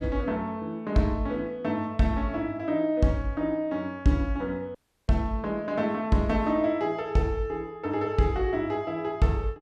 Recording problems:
audio cutting out; at 5 s

